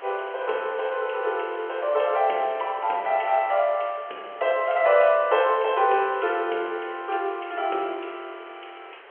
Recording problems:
phone line; 320 Hz to 3.3 kHz, G.711
hiss; SNR 21 dB

